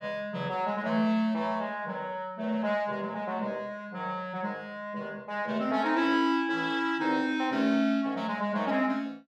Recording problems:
none

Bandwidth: 14.5 kHz